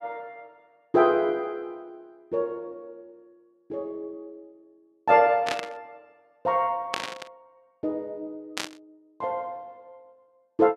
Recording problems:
static burst; at 5.5 s, at 7 s and at 8.5 s; peak +2 dB vs average level

